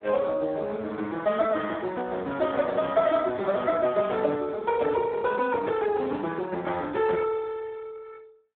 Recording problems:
telephone audio; 220 Hz to 3.8 kHz, Speex

